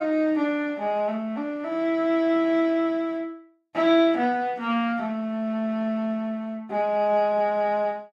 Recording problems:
none

